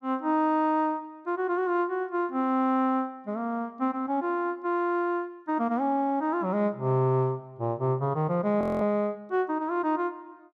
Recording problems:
frozen audio; at 8.5 s

